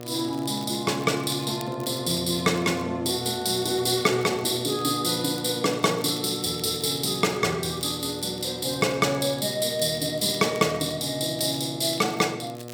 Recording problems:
electrical hum; 60 Hz, harmonics up to 2 kHz, SNR 14 dB
crackle; vinyl, SNR 23 dB

